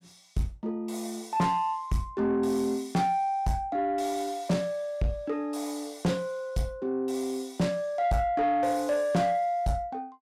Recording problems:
distorted audio; soft clipping, signal-to-distortion ratio 11 dB

